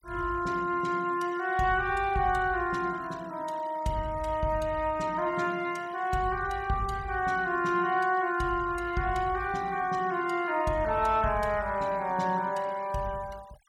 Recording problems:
noise reduction artefacts; signal-to-artefact ratio 23 dB

